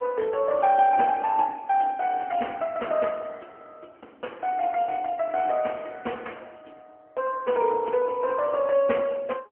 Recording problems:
phone line; 260 Hz to 3.2 kHz, AMR-NB

